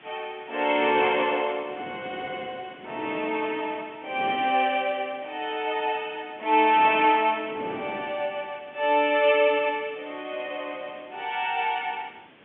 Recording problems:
phone line; 240 Hz to 3.4 kHz, G.711
hiss; SNR 27 dB
wind noise; below 750 Hz, SNR 19 dB

